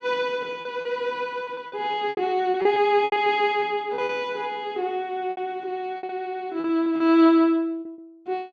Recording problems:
packet loss; 11% of the sound replaced, filled with repeated pitch periods

